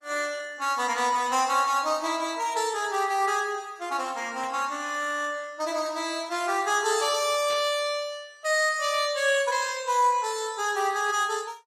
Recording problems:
codec artefacts; Opus, log-spectral distance 4 dB, nothing above 14.3 kHz
burst of static; at 4.5 s and at 7.5 s; peak -15 dB vs average level

